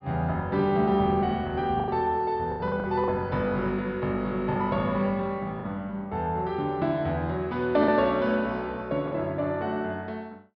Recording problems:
treble cut off; nothing above 5.5 kHz
lost packets; 4% of the sound replaced, filled with the last packet

